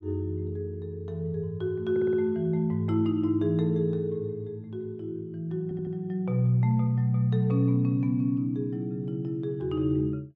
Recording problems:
audio stuttering; at 2 s and at 5.5 s

